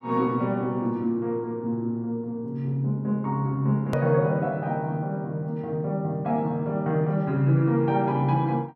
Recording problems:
edit click; at 4 s

